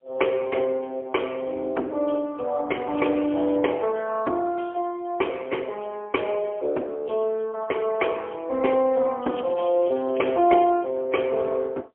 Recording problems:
phone line; 220 Hz to 3.3 kHz, AMR-NB, then MP3
crackling; at 3 s and from 9 to 11 s; loose cable, SNR 24 dB

